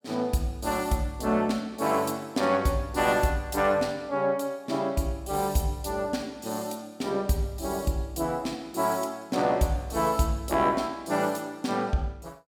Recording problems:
none

